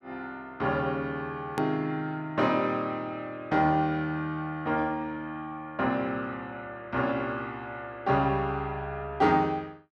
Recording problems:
edit click; at 1.5 s

